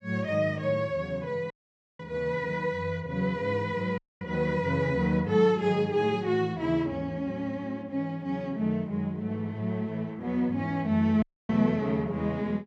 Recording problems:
dropout; at 1.5 s, at 4 s and at 11 s

